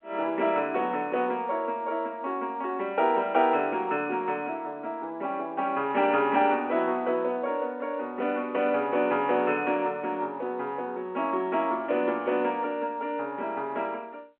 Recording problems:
phone line; 300 Hz to 3.2 kHz, G.711

